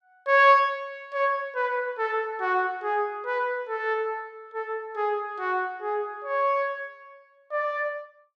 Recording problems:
none

